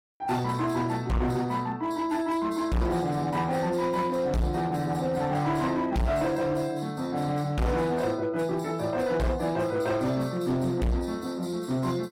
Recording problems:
lossy compression; AAC, log-spectral distance 2 dB, nothing above 16 kHz
distorted audio; hard clipping, signal-to-distortion ratio 6 dB

